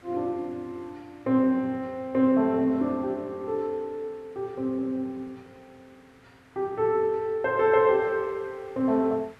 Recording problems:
background hiss; SNR 29 dB

